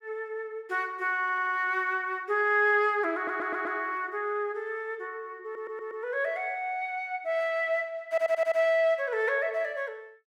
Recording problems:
audio stuttering; 4 times, first at 1 s

